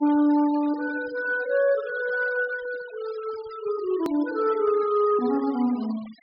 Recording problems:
low-pass filter; nothing above 5.5 kHz
denoising artefacts; signal-to-artefact ratio 21 dB
edit click; at 4 s

